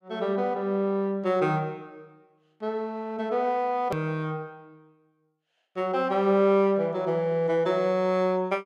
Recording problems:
edit click; at 4 s

